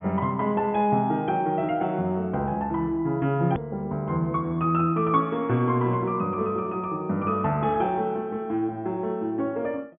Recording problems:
low-pass filter; nothing above 3.5 kHz
click at an edit; at 3.5 s

